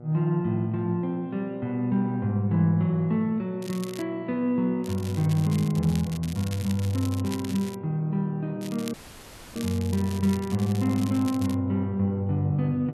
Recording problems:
electrical hum; 60 Hz, harmonics up to 1.3 kHz, SNR 18 dB
crackling; at 3.5 s, from 5 to 8 s and from 8.5 to 12 s; loose cable, SNR 16 dB
audio cutting out; at 9 s for 0.5 s

